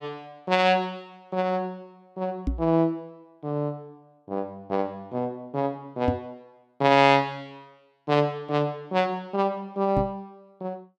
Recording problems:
knock on the microphone; at 2.5 s, at 6 s and at 10 s; peak +3 dB vs average level

